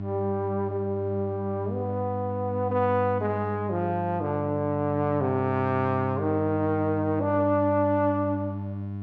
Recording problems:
hum; 50 Hz, harmonics up to 700 Hz, SNR 6 dB

